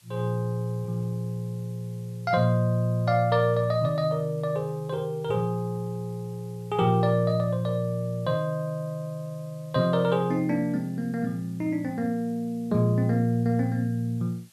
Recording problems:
hiss; slope +2 dB per octave, SNR 30 dB

